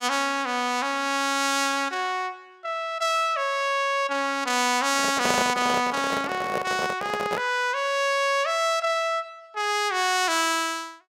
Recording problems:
handling noise; from 5 to 7.5 s; peak +1 dB vs average level

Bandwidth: 16.5 kHz